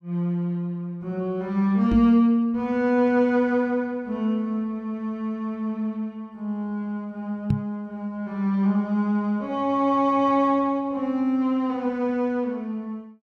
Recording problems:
microphone thump; at 2 s and at 7.5 s; peak +5 dB vs average level

